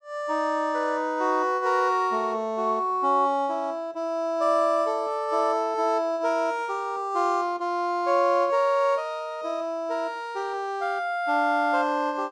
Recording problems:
none

